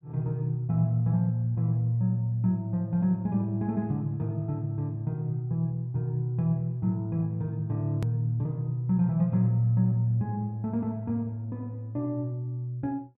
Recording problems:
hard cut with a click; at 8 s

